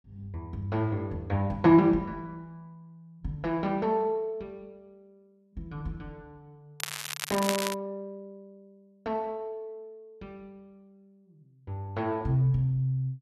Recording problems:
crackling; at 7 s; loose cable, SNR 5 dB

